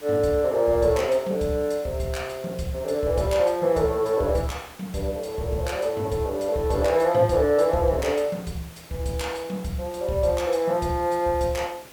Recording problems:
background hiss; slope -3 dB per octave, SNR 21 dB

